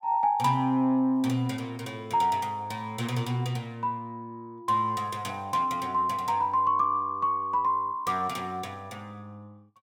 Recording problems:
none

